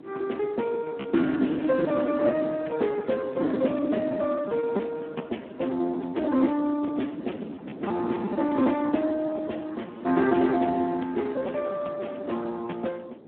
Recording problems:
telephone audio; 190 Hz to 3.3 kHz, Speex
wind on the microphone; below 420 Hz, SNR 13 dB
lost packets; 16% of the sound replaced, filled with repeated pitch periods

